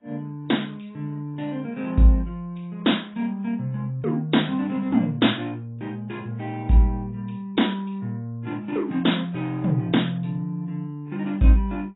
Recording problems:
lossy compression; AAC, log-spectral distance 3 dB, nothing above 3.8 kHz

